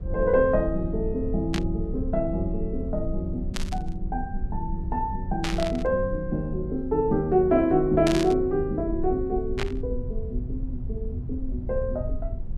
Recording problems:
rumble; below 70 Hz, SNR 8 dB
burst of static; 5 times, first at 1.5 s; peak 0 dB vs average level

